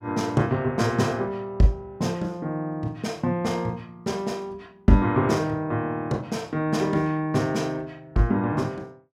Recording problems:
none

